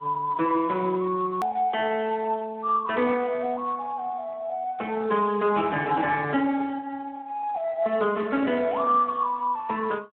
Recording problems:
telephone audio; 170 Hz to 3.5 kHz, Speex
hard cut with a click; at 1.5 s

